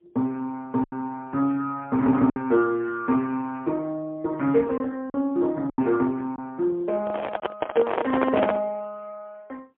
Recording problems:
telephone audio; 170 Hz to 2.3 kHz, AMR-NB, then MP3
lost packets; 3% of the sound replaced, filled with silence
microphone handling noise; from 7 to 8.5 s; peak +2 dB vs average level

